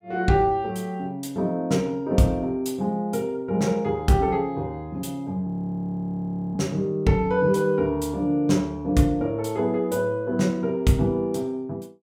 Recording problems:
frozen audio; at 5.5 s for 1 s

